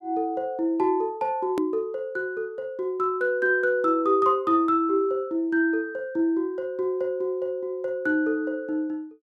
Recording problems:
click at an edit; at 1.5 s

